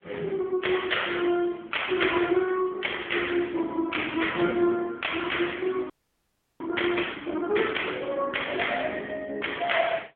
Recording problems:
phone line; 240 Hz to 3.4 kHz, AMR-NB
audio freezing; at 6 s for 0.5 s

